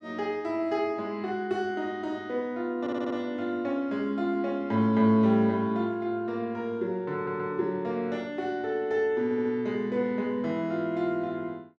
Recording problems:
stutter; at 3 s, at 7 s and at 9 s

